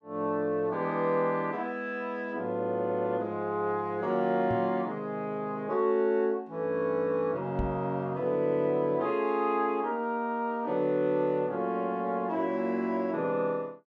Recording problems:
microphone thump; at 4.5 s and at 7.5 s; peak -1 dB vs average level

